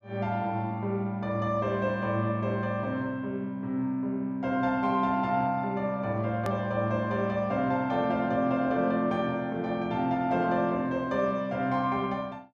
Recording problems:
edit click; at 6.5 s

